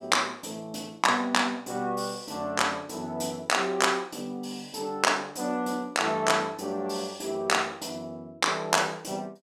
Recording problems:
none

